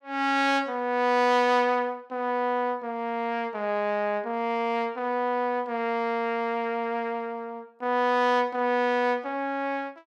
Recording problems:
none

